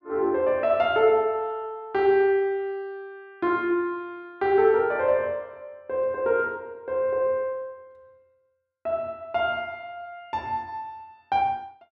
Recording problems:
none

